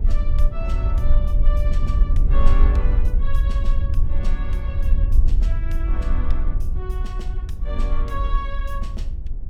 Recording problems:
low-frequency rumble; below 50 Hz, strongest tone 18 Hz, SNR -12 dB

